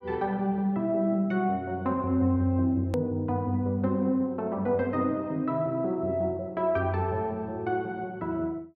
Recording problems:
edit click; at 3 s

